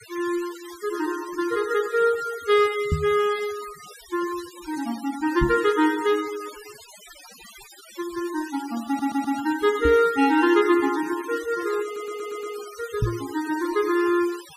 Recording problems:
noise reduction artefacts; signal-to-artefact ratio 17 dB
knock on the microphone; 4 times, first at 3 s; peak +4 dB vs average level
stutter; at 9 s and at 12 s

